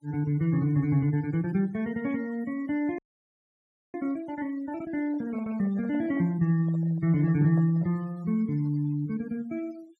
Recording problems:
denoising artefacts; signal-to-artefact ratio 24 dB
frozen audio; at 3 s for 1 s
microphone handling noise; from 5 to 8 s; peak -11 dB vs average level

